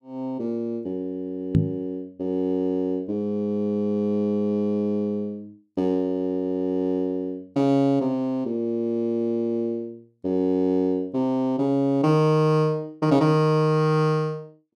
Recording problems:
microphone thump; at 1.5 s; peak +8 dB vs average level

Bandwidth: 12.5 kHz